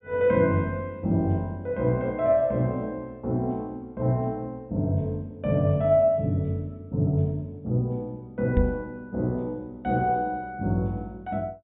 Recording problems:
treble cut off; nothing above 4 kHz
knock on the microphone; at 8.5 s; peak +7 dB vs average level

